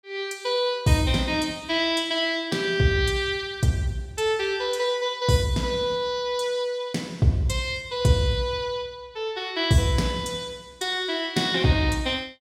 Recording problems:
none

